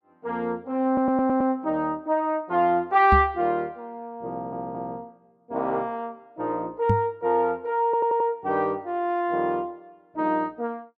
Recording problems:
audio stuttering; at 1 s, at 4.5 s and at 8 s
knock on the microphone; at 3 s and at 7 s; peak +5 dB vs average level

